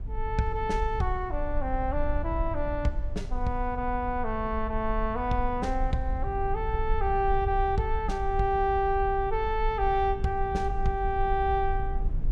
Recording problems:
low-frequency rumble; below 58 Hz, SNR 6 dB

